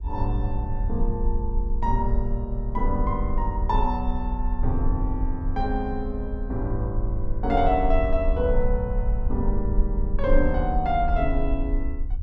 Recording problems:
rumble; below 50 Hz, SNR 1 dB

